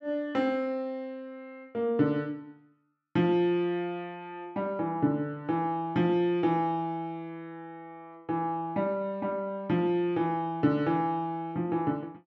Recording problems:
none

